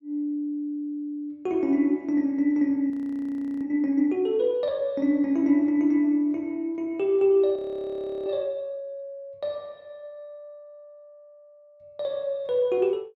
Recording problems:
frozen audio; at 3 s for 0.5 s and at 7.5 s for 0.5 s

